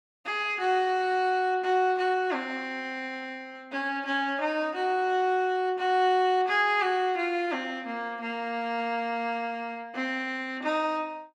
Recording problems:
none

